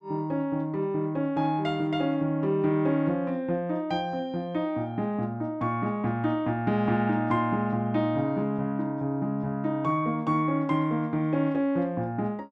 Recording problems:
none

